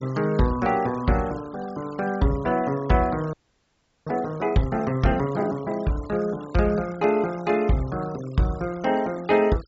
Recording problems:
treble cut off; nothing above 8 kHz
noise reduction artefacts; signal-to-artefact ratio 22 dB
frozen audio; at 3.5 s for 0.5 s

